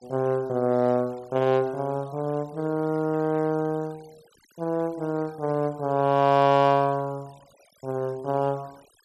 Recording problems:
denoising artefacts; signal-to-artefact ratio 27 dB

